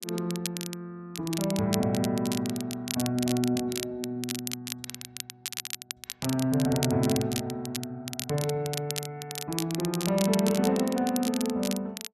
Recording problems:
crackling; vinyl, SNR 7 dB

